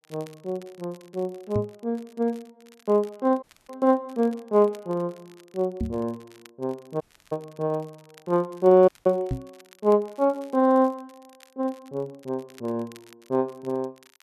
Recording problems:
crackling; vinyl, SNR 29 dB
microphone bump; at 1.5 s, at 6 s and at 9.5 s; peak +1 dB vs average level
dropout; at 3.5 s, at 7 s and at 9 s

